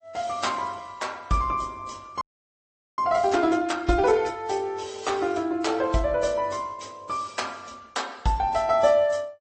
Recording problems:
lossy codec; MP3, then AAC, log-spectral distance 3 dB
frozen audio; at 2 s for 1 s

